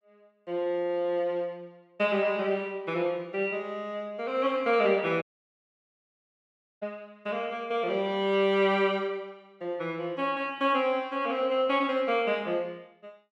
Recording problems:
dropout; at 5 s for 1.5 s

